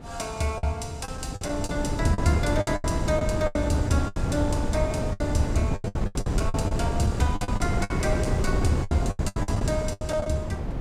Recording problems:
wind on the microphone; below 250 Hz, SNR 0 dB
lost packets; 15% of the sound replaced, filled with the last packet

